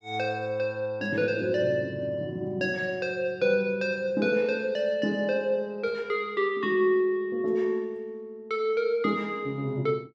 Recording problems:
none

